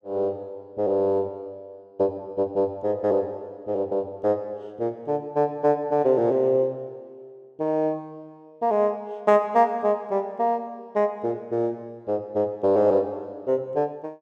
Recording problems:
none

